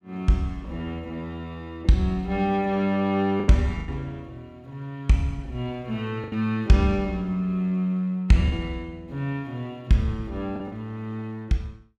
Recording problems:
packet loss; 3% of the sound replaced, filled with the last packet

